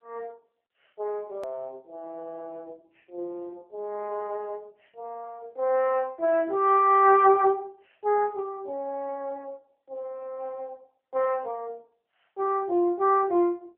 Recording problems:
telephone audio; 300 Hz to 3.1 kHz, AMR-NB
click at an edit; at 1.5 s

